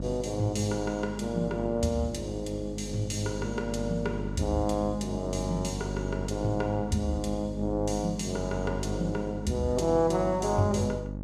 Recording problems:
hum; 50 Hz, harmonics up to 600 Hz, SNR 7 dB

